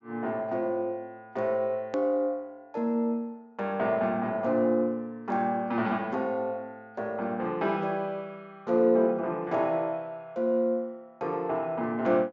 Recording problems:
low-pass filter; nothing above 7.3 kHz
hard cut with a click; at 2 s

